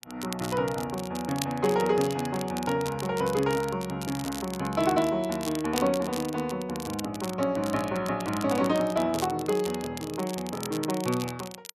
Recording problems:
crackle; vinyl, SNR 12 dB

